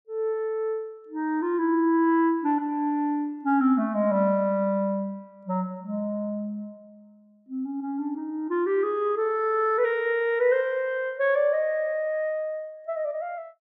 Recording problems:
none

